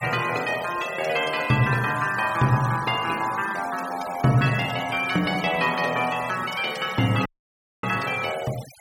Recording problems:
denoising artefacts; signal-to-artefact ratio 15 dB
audio cutting out; at 7.5 s for 0.5 s

